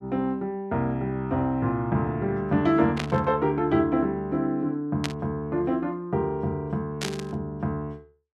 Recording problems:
static burst; at 3 s, at 5 s and at 7 s; peak +1 dB vs average level

